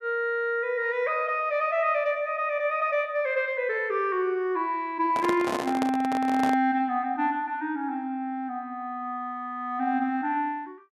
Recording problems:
handling noise; from 5 to 6.5 s; peak 0 dB vs average level

